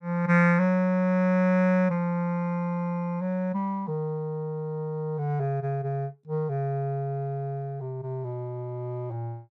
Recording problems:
none

